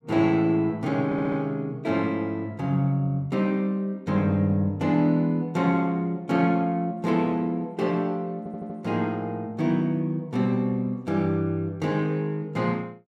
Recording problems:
audio stuttering; at 1 s and at 8.5 s

